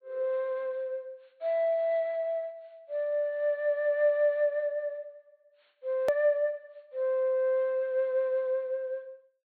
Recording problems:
low-pass filter; nothing above 4.4 kHz
edit click; at 6 s

